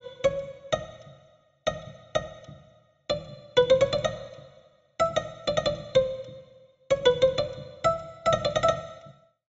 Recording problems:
treble cut off; nothing above 8 kHz

